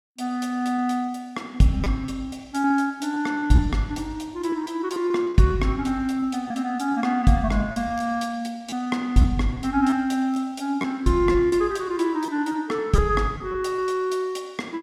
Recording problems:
packet loss; 8% of the sound replaced, filled with repeated pitch periods

